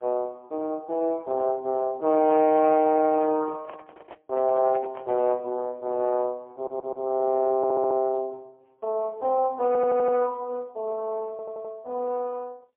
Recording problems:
telephone audio; 280 Hz to 3.1 kHz, AMR-NB, then MP3
microphone handling noise; from 2.5 to 5.5 s; peak -14 dB vs average level
audio stuttering; 4 times, first at 6.5 s

